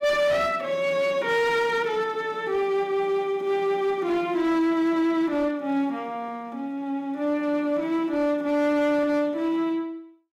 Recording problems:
distortion; hard clipping, signal-to-distortion ratio 11 dB

